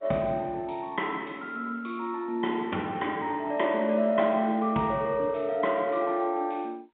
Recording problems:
telephone audio; 110 Hz to 3.7 kHz, G.711

